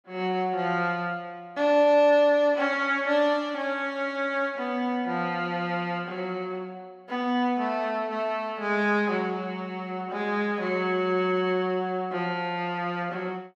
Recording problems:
none

